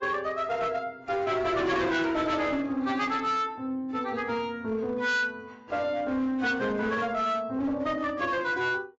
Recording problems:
lossy codec; AAC, log-spectral distance 2 dB, nothing above 7.3 kHz
distortion; hard clipping, signal-to-distortion ratio 10 dB

